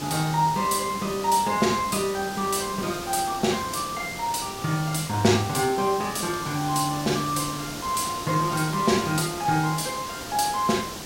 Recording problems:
background hiss; SNR 9 dB

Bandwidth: 16 kHz